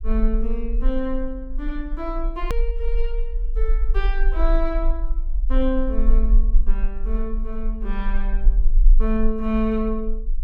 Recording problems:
low-frequency rumble; below 38 Hz, strongest tone 22 Hz, SNR -3 dB
click at an edit; at 2.5 s

